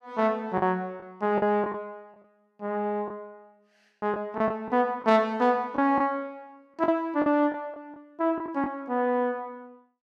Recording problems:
packet loss; 6% of the sound replaced, filled with the last packet

